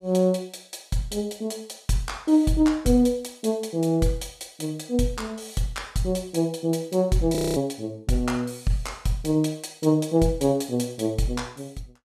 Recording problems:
audio freezing; at 7.5 s

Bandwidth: 14.5 kHz